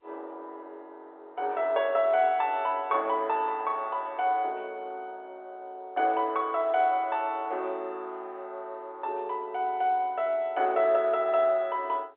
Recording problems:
phone line; 320 Hz to 3.7 kHz, G.711

